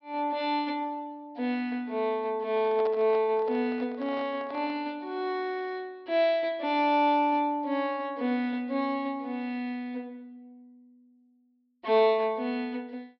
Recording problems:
treble cut off; nothing above 5.5 kHz
microphone handling noise; from 2.5 to 5 s; peak -8 dB vs average level

